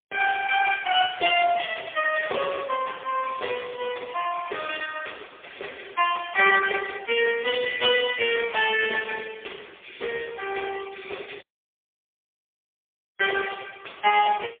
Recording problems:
telephone audio; 340 Hz to 3.4 kHz, AMR-NB, then MP3
dropout; at 11 s for 2 s

